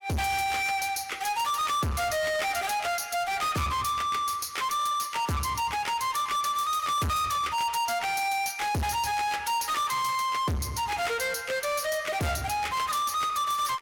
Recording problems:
distortion; soft clipping, signal-to-distortion ratio 7 dB

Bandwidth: 17 kHz